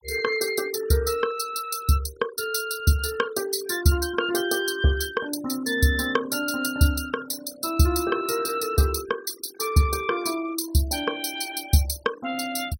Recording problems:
noise reduction artefacts; signal-to-artefact ratio 17 dB

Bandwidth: 16.5 kHz